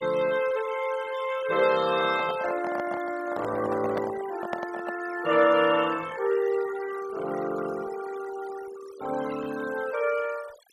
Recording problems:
denoising artefacts; signal-to-artefact ratio 16 dB
handling noise; from 2 to 5 s; peak -1 dB vs average level

